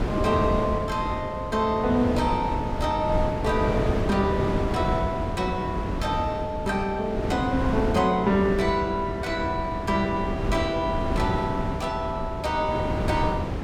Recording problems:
wind noise; below 400 Hz, SNR 3 dB

